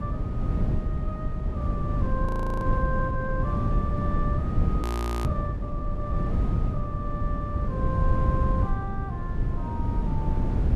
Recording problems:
low-frequency rumble; below 120 Hz, SNR 6 dB
wind on the microphone; below 150 Hz, SNR -8 dB
audio freezing; at 2.5 s and at 5 s

